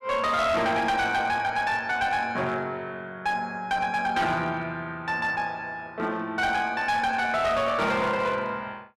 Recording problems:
distorted audio; hard clipping, signal-to-distortion ratio 11 dB

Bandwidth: 12.5 kHz